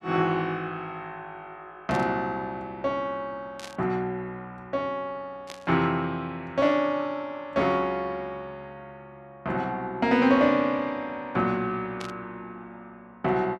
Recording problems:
static burst; 4 times, first at 2 s; peak -7 dB vs average level

